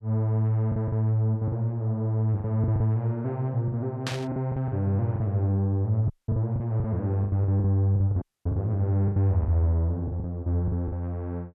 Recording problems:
lost packets; 11% of the sound replaced, filled with the last packet
burst of static; at 4 s; peak -2 dB vs average level
audio cutting out; at 6 s and at 8 s

